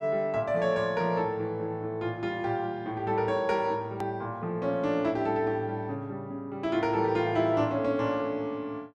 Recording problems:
hard cut with a click; at 4 s

